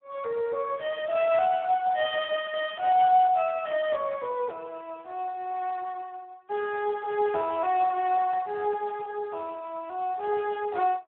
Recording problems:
phone line; 340 Hz to 3.7 kHz, Speex

